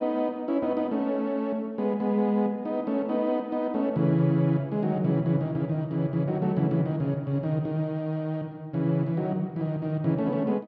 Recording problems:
none

